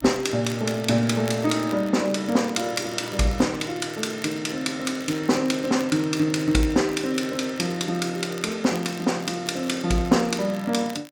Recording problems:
crackling; vinyl, SNR 20 dB

